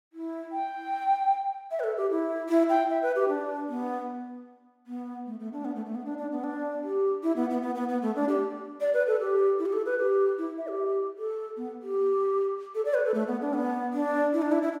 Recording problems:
none

